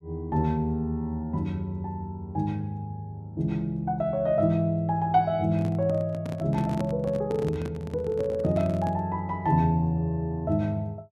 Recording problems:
microphone handling noise; from 5.5 to 9 s; peak -2 dB vs average level

